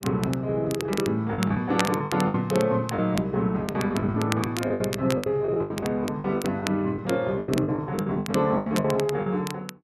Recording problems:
crackling; vinyl, SNR 12 dB
lost packets; 15% of the sound replaced, filled with the last packet

